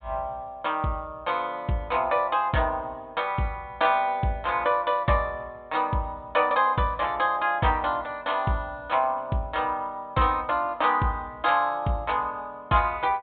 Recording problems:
low-pass filter; nothing above 4 kHz

